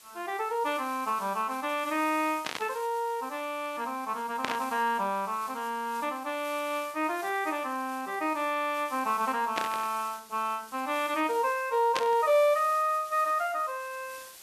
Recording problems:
hiss; slope +1 dB per octave, SNR 18 dB
static burst; 4 times, first at 2.5 s; peak +2 dB vs average level

